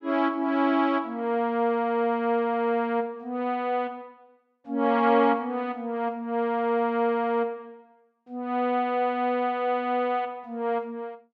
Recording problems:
none

